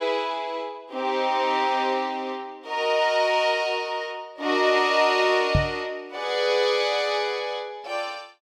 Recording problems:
knock on the microphone; at 5.5 s; peak +5 dB vs average level

